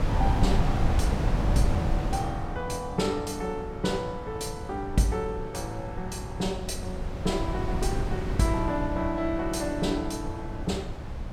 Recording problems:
wind noise; below 160 Hz, SNR 1 dB

